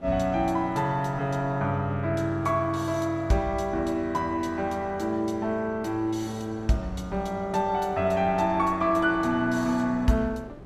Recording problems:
wind noise; below 460 Hz, SNR 20 dB

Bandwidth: 14.5 kHz